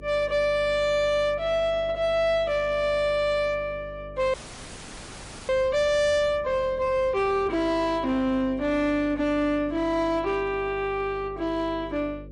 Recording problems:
codec artefacts; MP3, log-spectral distance 2 dB, nothing above 8.7 kHz
distortion; hard clipping, signal-to-distortion ratio 10 dB
electrical hum; 50 Hz, harmonics up to 600 Hz, SNR 19 dB
audio freezing; at 4.5 s for 1 s

